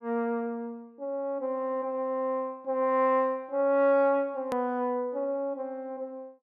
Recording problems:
click at an edit; at 4.5 s

